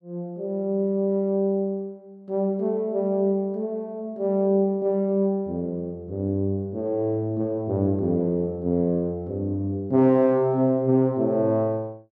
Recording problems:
none

